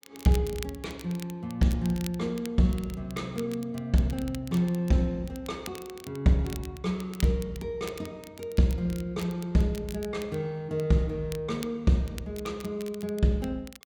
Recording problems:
crackling; vinyl, SNR 18 dB

